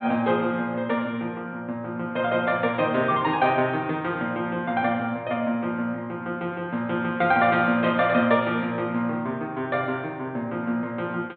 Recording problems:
treble cut off; nothing above 4 kHz

